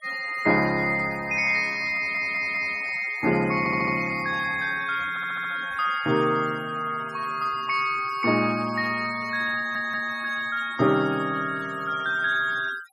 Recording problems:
noise reduction artefacts; signal-to-artefact ratio 20 dB
stutter; 4 times, first at 2 s

